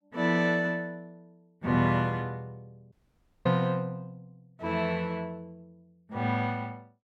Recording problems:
audio cutting out; at 3 s for 0.5 s

